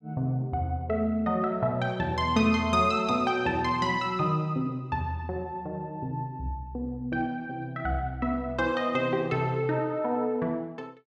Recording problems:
none

